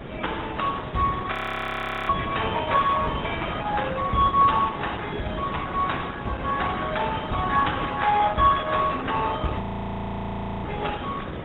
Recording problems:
lossy compression; AAC, then Opus, log-spectral distance 9 dB, nothing above 3.4 kHz
hiss; SNR 10 dB
frozen audio; at 1.5 s for 1 s and at 9.5 s for 1 s

